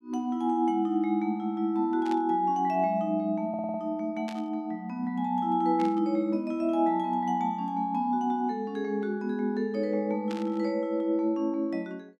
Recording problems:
static burst; 4 times, first at 2 s; peak -10 dB vs average level
audio stuttering; at 3.5 s

